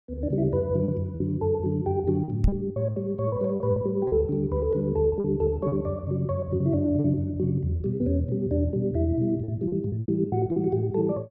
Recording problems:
lost packets; 9% of the sound replaced, filled with repeated pitch periods
knock on the microphone; at 2.5 s; peak +6 dB vs average level

